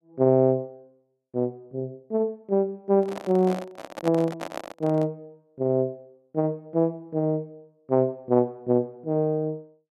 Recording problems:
handling noise; from 3 to 5 s; peak -3 dB vs average level

